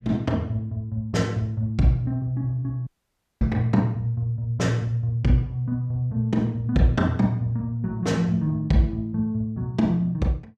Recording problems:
audio cutting out; at 3 s for 0.5 s

